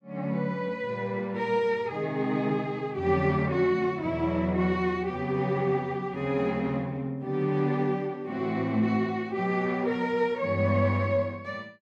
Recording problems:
none

